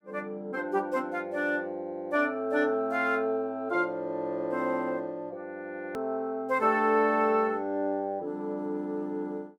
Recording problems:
edit click; at 6 s

